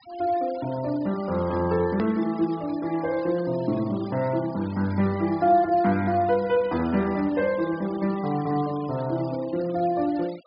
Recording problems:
low-pass filter; nothing above 5.1 kHz
noise reduction artefacts; signal-to-artefact ratio 21 dB
click at an edit; at 2 s

